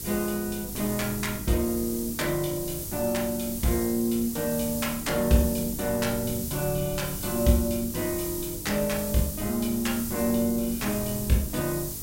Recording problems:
electrical hum; 50 Hz, harmonics up to 450 Hz, SNR 16 dB
background hiss; SNR 7 dB
wind noise; below 140 Hz, SNR 15 dB

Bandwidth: 16 kHz